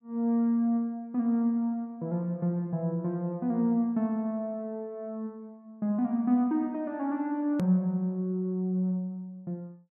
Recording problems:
click at an edit; at 7.5 s

